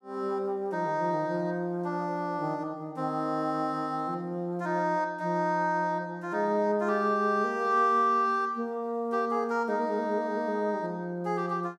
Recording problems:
none

